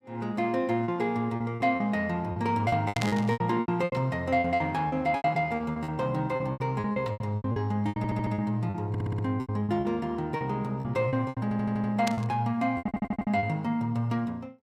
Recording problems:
packet loss; 15% of the sound replaced, filled with repeated pitch periods
burst of static; at 3 s and at 12 s; peak 0 dB vs average level
audio stuttering; 4 times, first at 8 s

